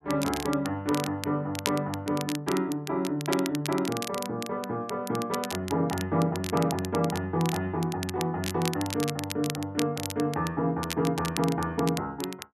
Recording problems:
crackling; vinyl, SNR 9 dB

